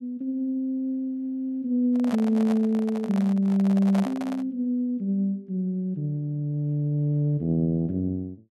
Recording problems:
handling noise; from 2 to 4.5 s; peak -4 dB vs average level

